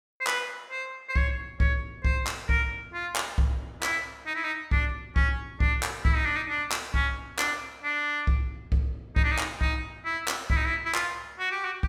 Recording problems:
none

